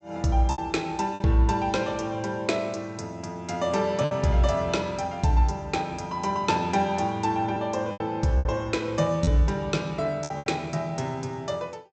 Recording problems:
low-pass filter; nothing above 8 kHz
lost packets; 4% of the sound replaced, filled with repeated pitch periods

